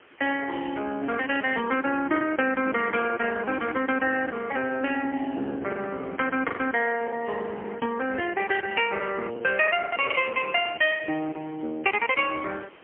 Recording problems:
phone line; 240 Hz to 3.2 kHz, AMR-NB, then MP3
background hiss; SNR 26 dB
packet loss; 5% of the sound replaced, filled with the last packet

